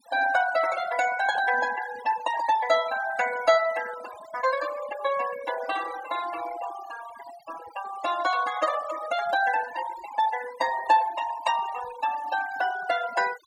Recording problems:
noise reduction artefacts; signal-to-artefact ratio 13 dB

